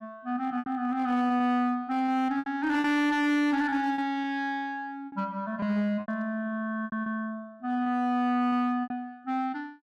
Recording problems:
distorted audio; hard clipping, uneven, signal-to-distortion ratio 10 dB
lost packets; 8% of the sound replaced, filled with repeated pitch periods

